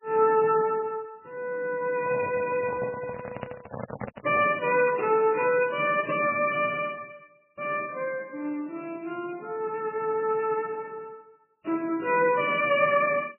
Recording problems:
lossy codec; MP3, log-spectral distance 4 dB, nothing above 2.4 kHz
handling noise; from 2 to 4.5 s; peak -4 dB vs average level

